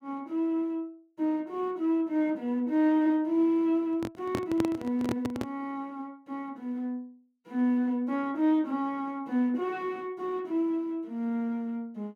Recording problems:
microphone handling noise; from 4 to 5.5 s; peak +2 dB vs average level

